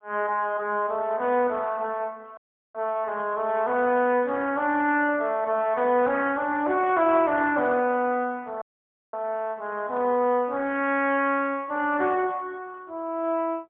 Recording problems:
phone line; 240 Hz to 3.3 kHz, AMR-NB, then MP3
audio cutting out; at 2.5 s and at 8.5 s for 0.5 s

